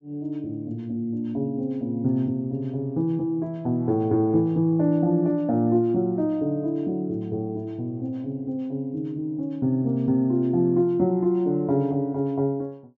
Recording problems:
treble missing; nothing above 8 kHz

